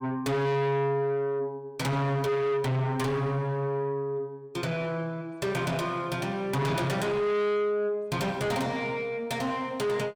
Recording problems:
distorted audio; soft clipping, signal-to-distortion ratio 7 dB

